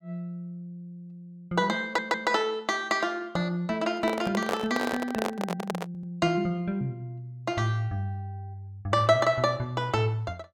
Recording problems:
audio stuttering; at 2 s and at 6 s
microphone handling noise; from 4 to 6 s; peak +3 dB vs average level

